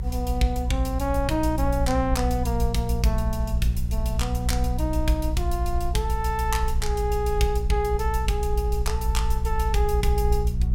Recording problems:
hum; 60 Hz, harmonics up to 420 Hz, SNR 4 dB
background hiss; SNR 25 dB
rumble; below 66 Hz, SNR 1 dB

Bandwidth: 16.5 kHz